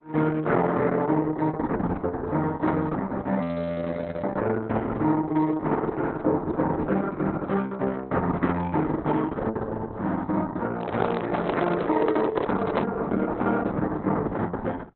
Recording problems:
lossy codec; Opus, log-spectral distance 3 dB, nothing above 4 kHz
audio freezing; at 3.5 s for 1 s
microphone handling noise; from 11 to 13 s; peak +6 dB vs average level

